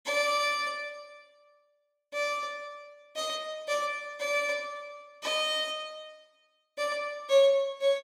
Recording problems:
none

